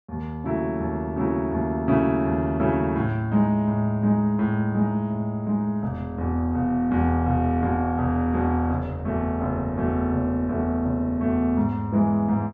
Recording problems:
none

